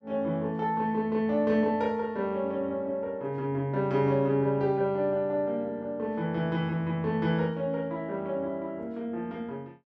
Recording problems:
none

